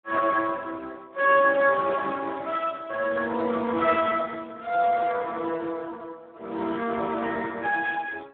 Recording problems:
telephone audio; 280 Hz to 2.5 kHz, Speex

